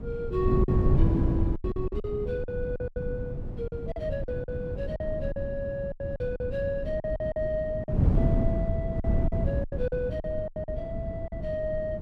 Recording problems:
wind on the microphone; below 160 Hz, SNR -2 dB
packet loss; 12% of the sound replaced, filled with silence

